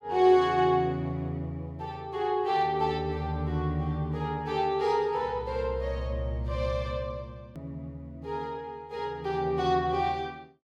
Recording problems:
edit click; at 7.5 s

